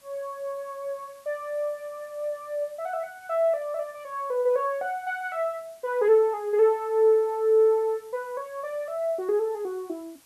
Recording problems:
background hiss; slope -1 dB per octave, SNR 29 dB

